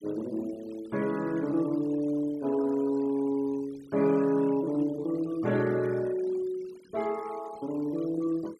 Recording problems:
noise reduction artefacts; signal-to-artefact ratio 22 dB

